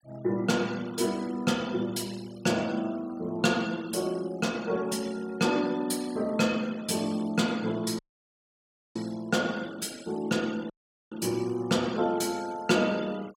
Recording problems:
denoising artefacts; signal-to-artefact ratio 22 dB
dropout; at 8 s for 1 s and at 11 s

